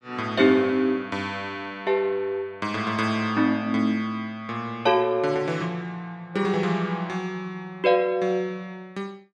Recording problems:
none

